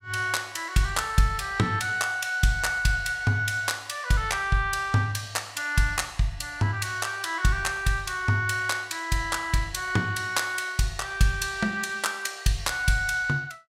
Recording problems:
none

